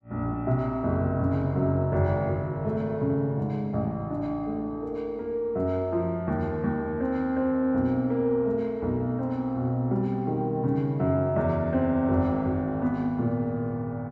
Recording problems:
none

